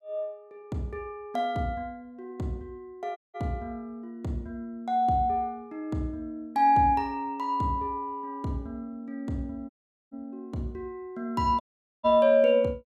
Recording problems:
audio cutting out; at 3 s, at 9.5 s and at 12 s

